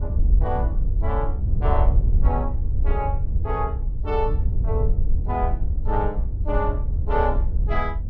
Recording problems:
wind noise; below 72 Hz, SNR -5 dB

